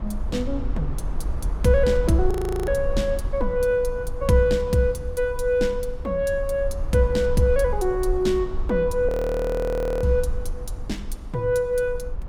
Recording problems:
rumble; below 58 Hz, SNR 9 dB
audio freezing; at 2.5 s and at 9 s for 1 s

